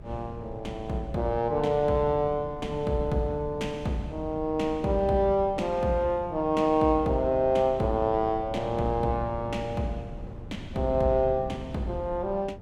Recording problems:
wind on the microphone; below 200 Hz, SNR 15 dB

